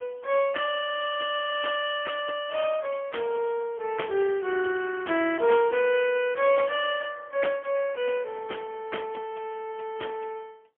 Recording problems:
phone line; 280 Hz to 3.3 kHz, AMR-NB, then MP3

